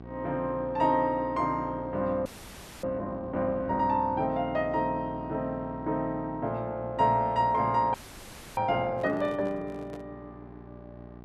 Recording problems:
hum; 60 Hz, harmonics up to 1.6 kHz, SNR 16 dB
frozen audio; at 2.5 s for 0.5 s and at 8 s for 0.5 s
handling noise; from 9 to 10 s; peak -13 dB vs average level

